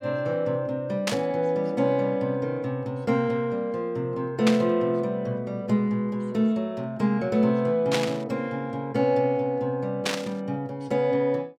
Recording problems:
burst of static; 4 times, first at 1 s; peak +3 dB vs average level

